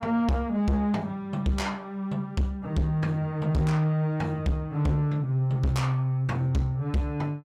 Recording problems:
distorted audio; soft clipping, signal-to-distortion ratio 7 dB

